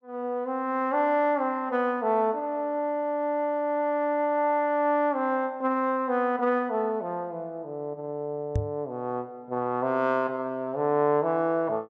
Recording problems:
knock on the microphone; at 8.5 s; peak +3 dB vs average level

